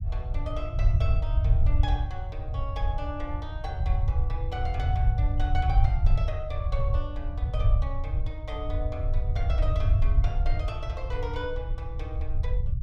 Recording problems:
rumble; below 86 Hz, SNR -9 dB

